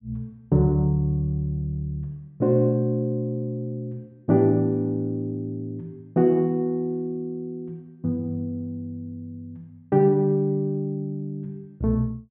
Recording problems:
low-pass filter; nothing above 4 kHz

